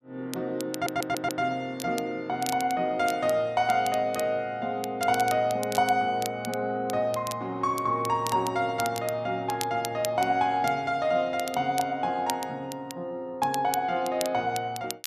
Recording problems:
crackling; vinyl, SNR 13 dB
audio stuttering; at 0.5 s

